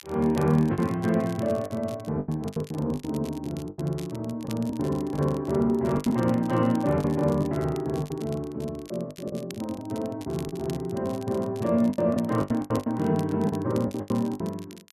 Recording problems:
crackle; vinyl, SNR 21 dB
packet loss; 11% of the sound replaced, filled with the last packet

